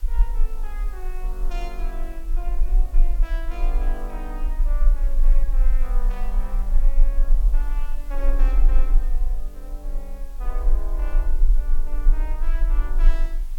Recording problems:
hiss; slope -2 dB per octave, SNR 13 dB
low-frequency rumble; below 34 Hz, strongest tone 24 Hz, SNR -15 dB

